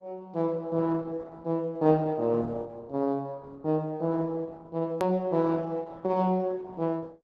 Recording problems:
codec artefacts; Opus, log-spectral distance 2 dB, nothing above 13.1 kHz
click at an edit; at 5 s

